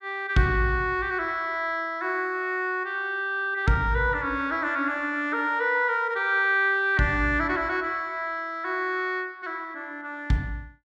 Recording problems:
none

